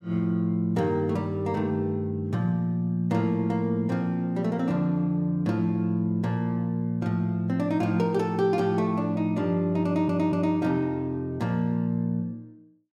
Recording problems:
audio stuttering; at 10 s

